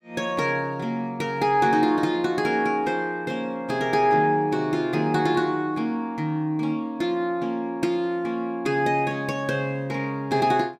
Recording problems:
none

